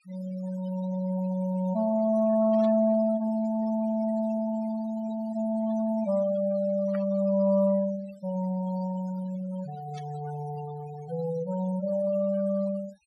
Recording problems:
noise reduction artefacts; signal-to-artefact ratio 19 dB
static burst; at 2.5 s, at 7 s and at 10 s; peak -14 dB vs average level

